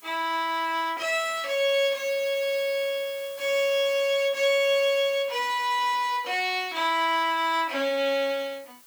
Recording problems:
hiss; slope 0 dB per octave, SNR 23 dB

